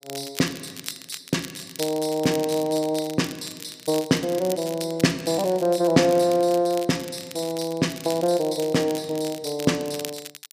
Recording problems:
crackle; vinyl, SNR 14 dB

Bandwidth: 15 kHz